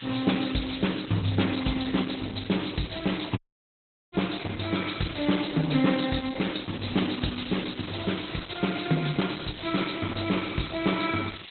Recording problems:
codec artefacts; Opus, log-spectral distance 16 dB, nothing above 4.1 kHz
background hiss; SNR 14 dB
audio cutting out; at 3.5 s for 0.5 s

